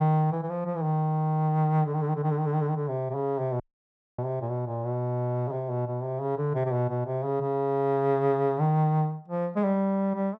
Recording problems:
audio cutting out; at 3.5 s for 0.5 s

